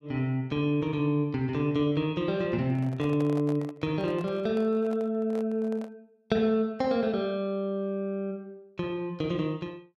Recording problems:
handling noise; from 2.5 to 6 s; peak -8 dB vs average level

